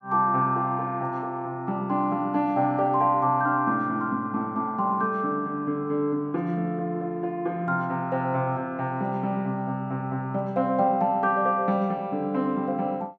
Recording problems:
none

